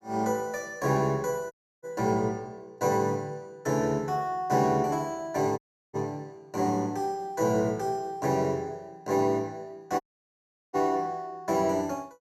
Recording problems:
audio cutting out; at 1.5 s, at 5.5 s and at 10 s for 0.5 s

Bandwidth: 13 kHz